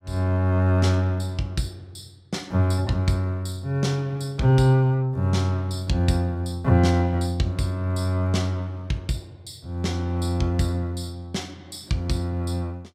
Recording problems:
none

